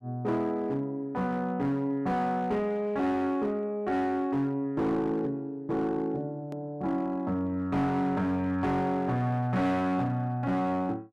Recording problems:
distortion; hard clipping, uneven, signal-to-distortion ratio 12 dB
edit click; at 6.5 s

